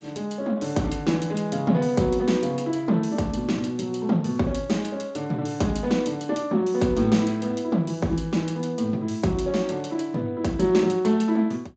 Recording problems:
codec artefacts; Speex, log-spectral distance 4 dB, nothing above 7.6 kHz

